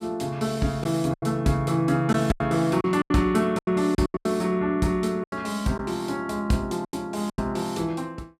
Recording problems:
packet loss; 10% of the sound replaced, filled with silence

